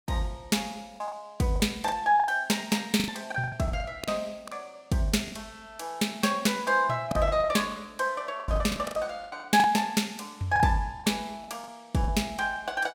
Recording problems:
lost packets; 11% of the sound replaced, filled with the last packet

